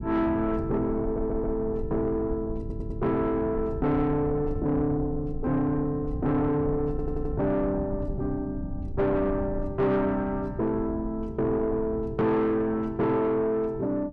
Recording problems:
distorted audio; soft clipping, signal-to-distortion ratio 10 dB
low-frequency rumble; below 150 Hz, SNR 10 dB
audio stuttering; at 1 s, at 2.5 s and at 7 s

